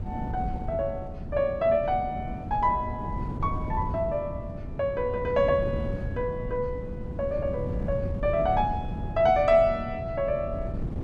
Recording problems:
wind on the microphone; below 190 Hz, SNR 7 dB

